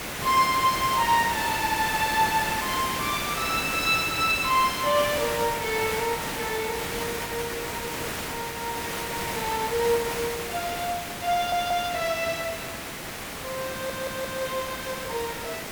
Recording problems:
hiss; slope -3 dB per octave, SNR 4 dB
stutter; at 1.5 s, at 11 s and at 14 s

